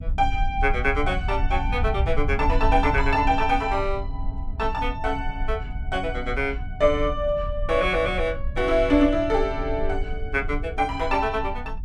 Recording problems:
rumble; below 64 Hz, SNR 7 dB

